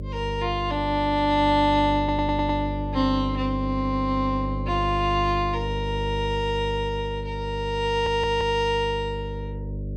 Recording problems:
electrical hum; 50 Hz, harmonics up to 600 Hz, SNR 7 dB
stutter; at 2 s and at 8 s

